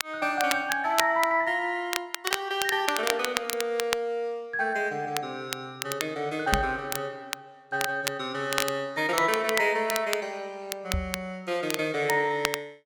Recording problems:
crackle; vinyl, SNR 5 dB
microphone bump; at 6.5 s and at 11 s; peak +2 dB vs average level

